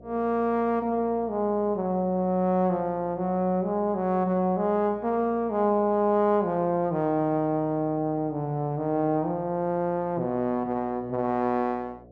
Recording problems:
hum; 60 Hz, harmonics up to 720 Hz, SNR 24 dB

